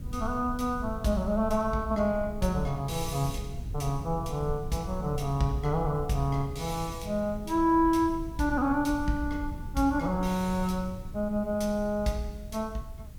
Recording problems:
background hiss; slope -1 dB per octave, SNR 29 dB
rumble; below 100 Hz, SNR 11 dB

